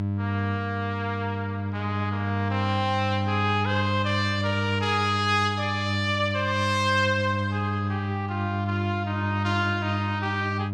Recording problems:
electrical hum; 50 Hz, harmonics up to 700 Hz, SNR 2 dB

